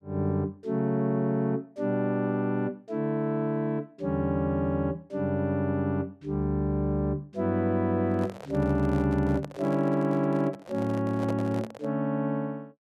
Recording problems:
handling noise; from 8 to 12 s; peak -5 dB vs average level

